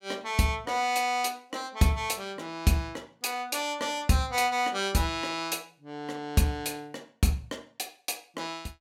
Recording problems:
none

